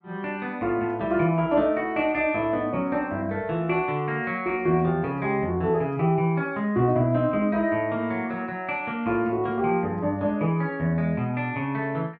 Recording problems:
treble missing; nothing above 8 kHz

